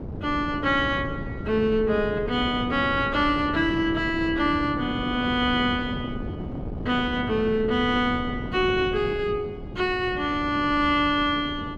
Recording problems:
wind on the microphone; below 340 Hz, SNR 10 dB

